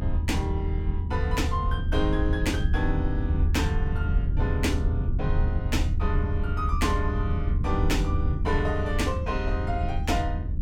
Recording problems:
low-frequency rumble; below 82 Hz, SNR -3 dB

